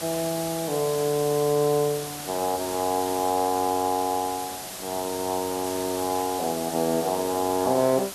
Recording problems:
hiss; slope -1 dB per octave, SNR 8 dB

